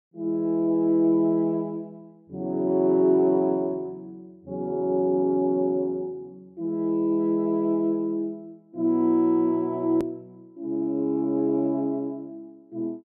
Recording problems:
click at an edit; at 10 s

